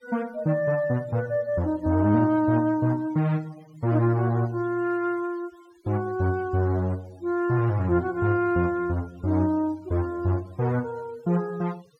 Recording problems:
noise reduction artefacts; signal-to-artefact ratio 27 dB

